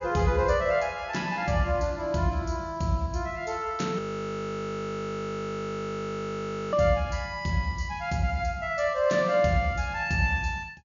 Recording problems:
treble missing; nothing above 7.1 kHz
audio freezing; at 4 s for 2.5 s

